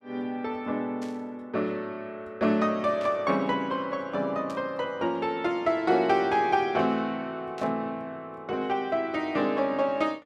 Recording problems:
static burst; 4 times, first at 1 s; peak -13 dB vs average level

